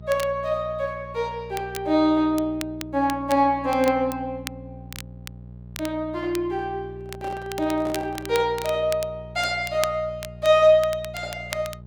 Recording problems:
electrical hum; 60 Hz, harmonics up to 600 Hz, SNR 17 dB
crackle; vinyl, SNR 16 dB
handling noise; from 7 to 8.5 s; peak -10 dB vs average level

